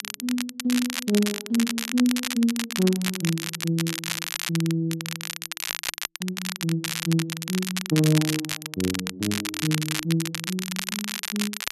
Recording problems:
crackle; vinyl, SNR 3 dB

